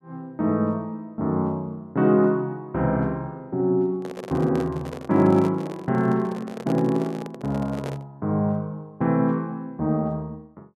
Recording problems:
microphone handling noise; from 4 to 8 s; peak -5 dB vs average level

